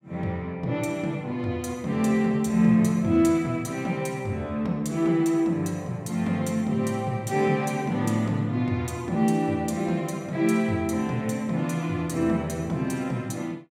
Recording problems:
none

